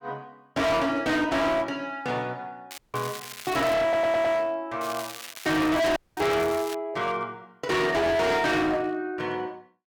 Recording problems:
distorted audio; hard clipping, signal-to-distortion ratio 6 dB
crackling; from 2.5 to 3.5 s and from 5 to 6.5 s; loose cable, SNR 14 dB
audio cutting out; at 3 s and at 6 s
audio stuttering; at 4 s

